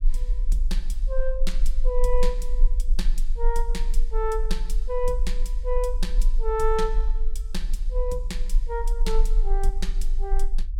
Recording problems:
rumble; below 34 Hz, strongest tone 18 Hz, SNR -3 dB

